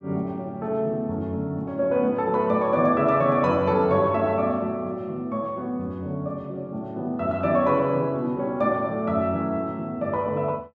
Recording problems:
none

